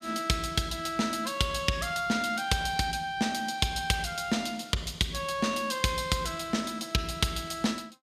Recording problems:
none

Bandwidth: 15.5 kHz